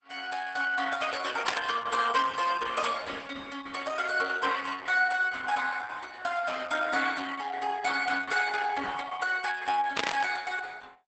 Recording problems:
codec artefacts; Opus, log-spectral distance 5 dB, nothing above 8 kHz
static burst; at 1.5 s and at 10 s; peak +5 dB vs average level

